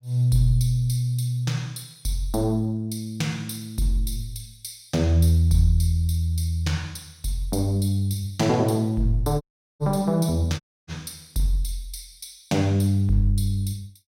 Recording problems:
dropout; at 9.5 s and at 11 s

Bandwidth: 16 kHz